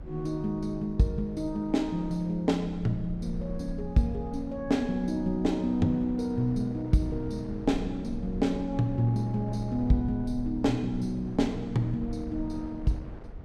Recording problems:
rumble; below 72 Hz, strongest tone 32 Hz, SNR 15 dB
wind on the microphone; below 590 Hz, SNR 20 dB

